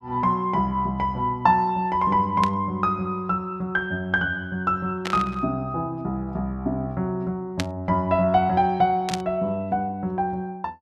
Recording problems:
burst of static; 4 times, first at 2.5 s; peak 0 dB vs average level

